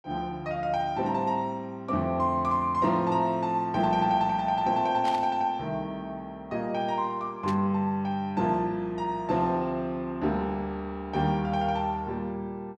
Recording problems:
burst of static; at 5 s and at 7.5 s; peak -7 dB vs average level

